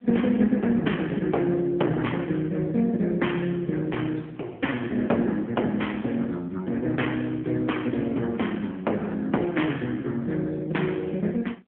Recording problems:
phone line; 190 Hz to 3.5 kHz, AMR-NB

